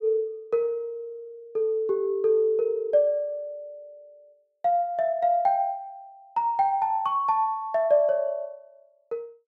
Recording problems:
none

